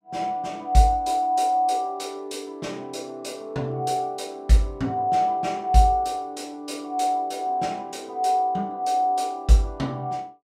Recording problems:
none

